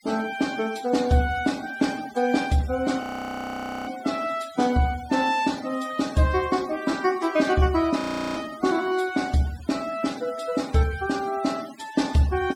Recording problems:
denoising artefacts; signal-to-artefact ratio 18 dB
audio freezing; at 3 s for 1 s and at 8 s

